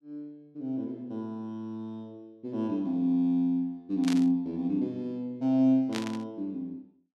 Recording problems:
burst of static; at 4 s and at 6 s; peak -3 dB vs average level

